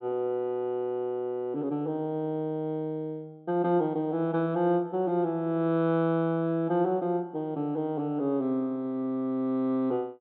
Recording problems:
treble missing; nothing above 4 kHz

